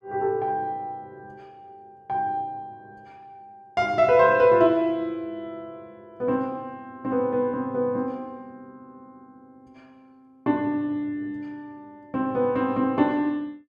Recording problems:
none

